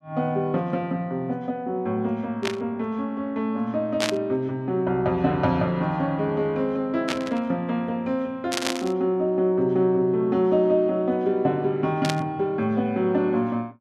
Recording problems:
static burst; 5 times, first at 2.5 s; peak +3 dB vs average level

